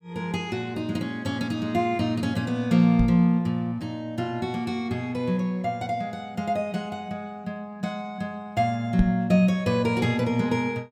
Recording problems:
knock on the microphone; at 3 s and at 9 s; peak +6 dB vs average level

